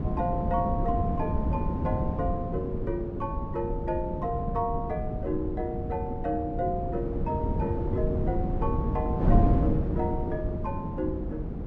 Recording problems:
wind on the microphone; below 240 Hz, SNR -2 dB

